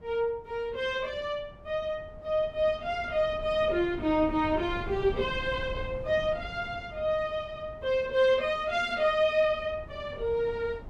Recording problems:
wind on the microphone; below 200 Hz, SNR 16 dB

